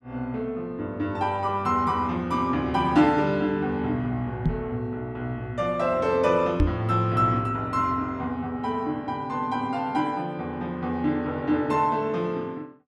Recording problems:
microphone bump; at 4.5 s and at 6.5 s; peak +7 dB vs average level

